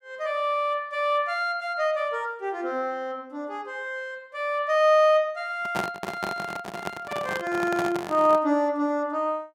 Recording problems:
microphone handling noise; from 5.5 to 8.5 s; peak +1 dB vs average level

